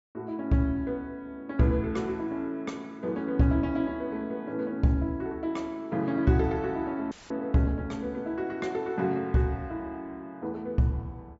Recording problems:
low-pass filter; nothing above 8 kHz
dropout; at 7 s; filled with static

